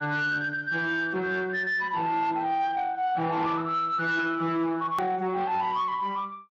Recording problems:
codec artefacts; MP3, then Speex, log-spectral distance 2 dB, nothing above 18.9 kHz
distorted audio; soft clipping, signal-to-distortion ratio 11 dB
hard cut with a click; at 5 s

